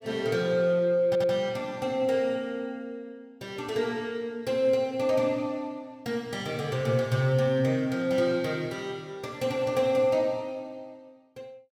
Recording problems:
audio stuttering; at 1 s

